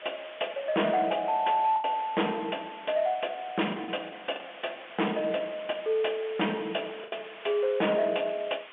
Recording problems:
phone line; 300 Hz to 3.3 kHz, G.711
distorted audio; hard clipping, uneven, signal-to-distortion ratio 6 dB
hiss; SNR 17 dB
packet loss; 4% of the sound replaced, filled with the last packet

